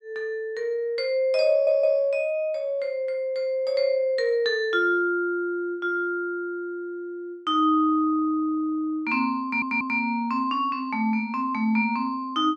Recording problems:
stutter; at 1.5 s and at 9.5 s

